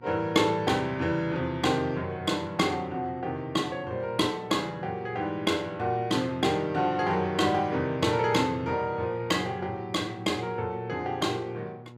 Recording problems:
hum; 60 Hz, harmonics up to 960 Hz, SNR 22 dB

